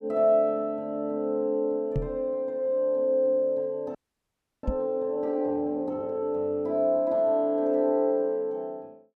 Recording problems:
knock on the microphone; at 2 s and at 4.5 s; peak +1 dB vs average level
frozen audio; at 4 s for 0.5 s

